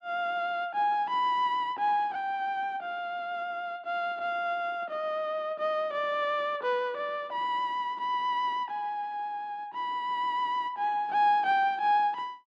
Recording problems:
none

